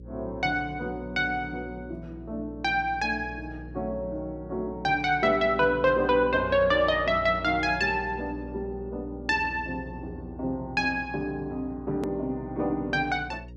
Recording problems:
hum; 60 Hz, harmonics up to 540 Hz, SNR 16 dB
edit click; at 12 s

